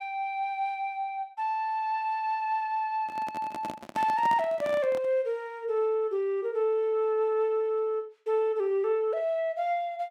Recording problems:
microphone handling noise; from 3 to 5 s; peak -5 dB vs average level

